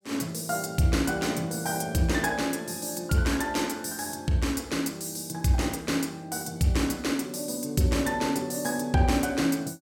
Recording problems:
none

